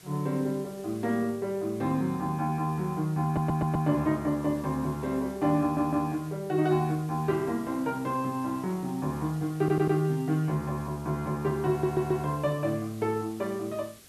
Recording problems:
background hiss; SNR 22 dB
stutter; 4 times, first at 3.5 s

